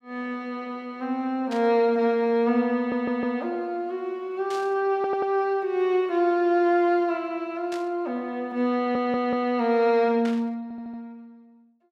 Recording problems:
static burst; 4 times, first at 1.5 s; peak -10 dB vs average level
stutter; 4 times, first at 3 s

